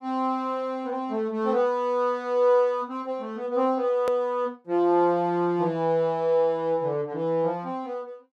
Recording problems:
hard cut with a click; at 4 s

